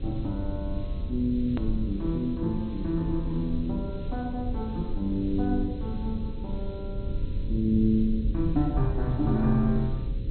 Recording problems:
treble missing; nothing above 4.2 kHz
hum; 60 Hz, harmonics up to 540 Hz, SNR 17 dB
hiss; SNR 27 dB
low-frequency rumble; below 88 Hz, SNR 5 dB
edit click; at 1.5 s

